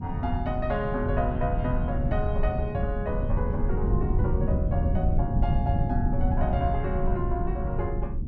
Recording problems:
rumble; below 130 Hz, SNR -3 dB

